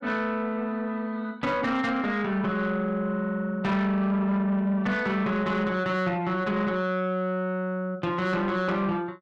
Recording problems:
distortion; soft clipping, signal-to-distortion ratio 12 dB

